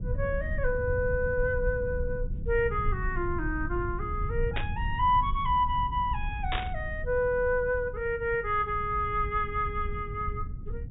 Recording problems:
treble missing; nothing above 4 kHz
low-frequency rumble; below 94 Hz, SNR 6 dB
burst of static; at 4.5 s and at 6.5 s; peak +1 dB vs average level

